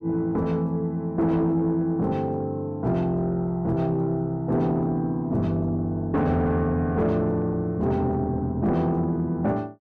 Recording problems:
distorted audio; soft clipping, signal-to-distortion ratio 11 dB

